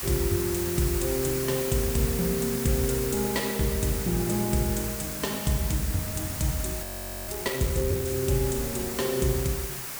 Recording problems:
background hiss; SNR 4 dB
wind on the microphone; below 210 Hz, SNR 20 dB
audio freezing; at 7 s

